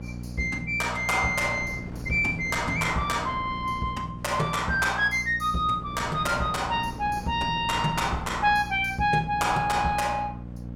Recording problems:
electrical hum; 60 Hz, harmonics up to 780 Hz, SNR 13 dB
wind noise; below 380 Hz, SNR 17 dB

